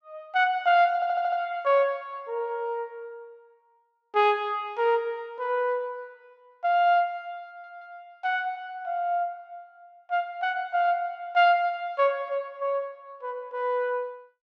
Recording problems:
audio stuttering; at 1 s and at 7.5 s

